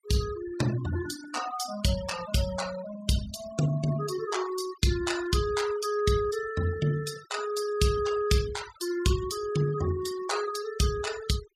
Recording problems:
noise reduction artefacts; signal-to-artefact ratio 12 dB

